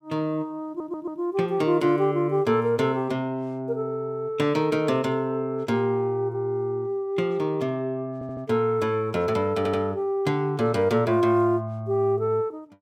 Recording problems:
audio stuttering; at 0.5 s, at 8 s and at 9.5 s

